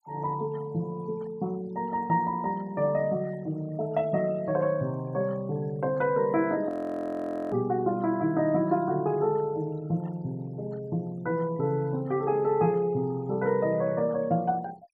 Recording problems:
noise reduction artefacts; signal-to-artefact ratio 26 dB
audio freezing; at 6.5 s for 1 s

